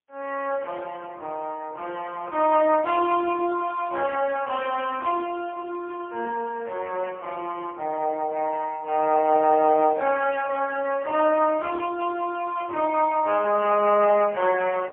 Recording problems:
telephone audio; 320 Hz to 3.3 kHz, AMR-NB, then MP3

